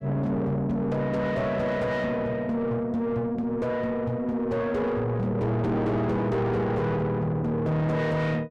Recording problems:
distorted audio; soft clipping, signal-to-distortion ratio 7 dB

